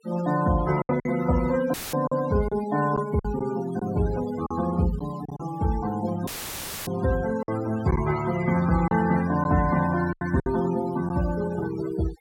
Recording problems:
denoising artefacts; signal-to-artefact ratio 13 dB
lost packets; 6% of the sound replaced, filled with silence
dropout; at 1.5 s and at 6.5 s for 0.5 s; filled with static

